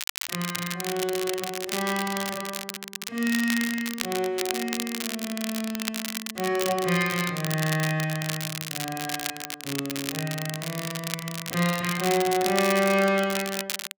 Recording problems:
crackling; vinyl, SNR 4 dB

